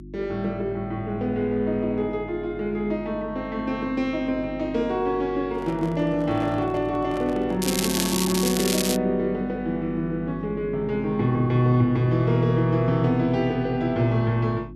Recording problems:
electrical hum; 50 Hz, harmonics up to 350 Hz, SNR 16 dB
handling noise; from 5.5 to 9 s; peak -9 dB vs average level
crackling; from 7.5 to 9 s; loose cable, SNR 3 dB

